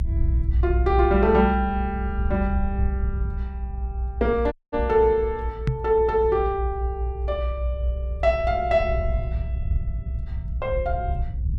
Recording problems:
rumble; below 66 Hz, strongest tone 62 Hz, SNR 4 dB
dropout; at 4.5 s
knock on the microphone; at 5.5 s; peak +5 dB vs average level

